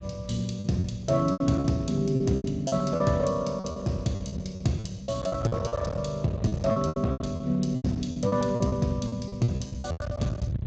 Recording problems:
lossy codec; Speex, log-spectral distance 3 dB, nothing above 7.3 kHz
distorted audio; hard clipping, signal-to-distortion ratio 11 dB
low-frequency rumble; below 300 Hz, SNR 12 dB
packet loss; 16% of the sound replaced, filled with repeated pitch periods

